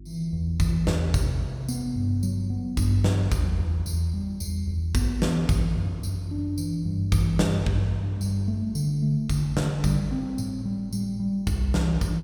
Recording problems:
mains hum; 50 Hz, harmonics up to 350 Hz, SNR 20 dB

